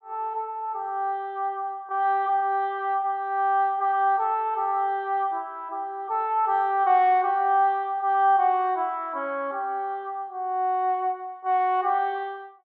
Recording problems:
none

